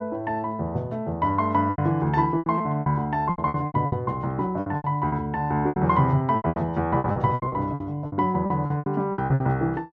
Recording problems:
lost packets; 17% of the sound replaced, filled with repeated pitch periods

